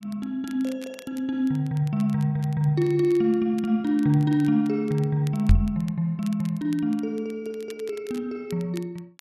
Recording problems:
crackling; vinyl, SNR 25 dB
knock on the microphone; at 5.5 s; peak +10 dB vs average level

